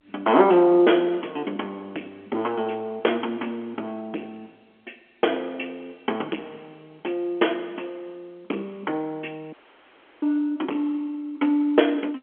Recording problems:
telephone audio; 260 Hz to 3.4 kHz, G.711
distortion; soft clipping, signal-to-distortion ratio 13 dB
dropout; at 9.5 s for 0.5 s

